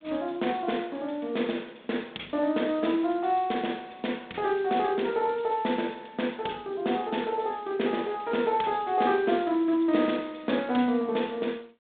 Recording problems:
telephone audio; 190 Hz to 3.7 kHz, G.726

